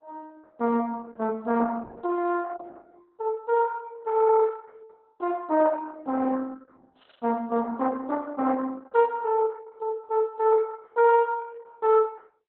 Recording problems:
lossy codec; Opus, log-spectral distance 3 dB

